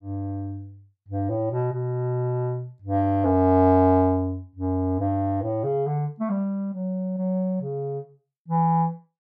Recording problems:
none

